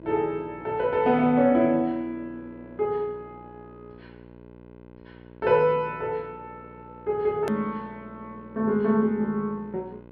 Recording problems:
treble missing; nothing above 5.5 kHz
hum; 60 Hz, harmonics up to 1.6 kHz, SNR 22 dB
hard cut with a click; at 7.5 s

